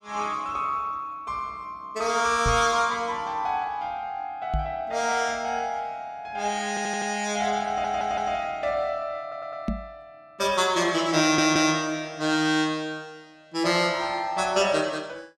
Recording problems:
knock on the microphone; at 2.5 s, at 4.5 s and at 9.5 s; peak +1 dB vs average level
audio stuttering; 4 times, first at 6.5 s

